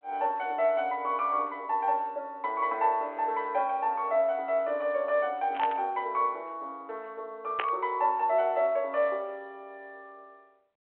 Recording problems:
phone line; 340 Hz to 3.6 kHz, G.726
static burst; at 5.5 s and at 7.5 s; peak +2 dB vs average level

